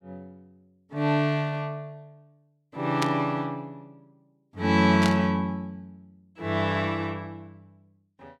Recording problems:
static burst; at 3 s and at 5 s; peak 0 dB vs average level

